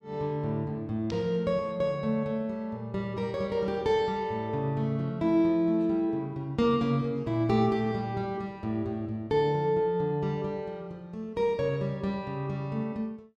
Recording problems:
none

